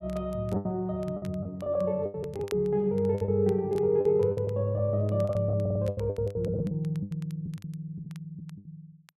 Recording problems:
crackle; vinyl, SNR 27 dB
packet loss; 15% of the sound replaced, filled with the last packet
stutter; at 5.5 s

